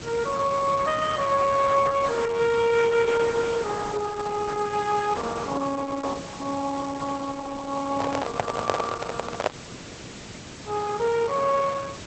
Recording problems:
lossy codec; Opus, log-spectral distance 9 dB, nothing above 7.6 kHz
background hiss; SNR 14 dB
microphone handling noise; from 8 to 9.5 s; peak +7 dB vs average level

